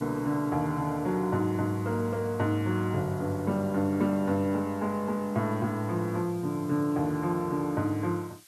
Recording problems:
background hiss; slope +3 dB per octave, SNR 24 dB

